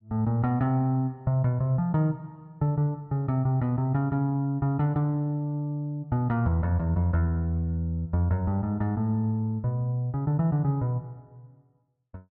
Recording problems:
none

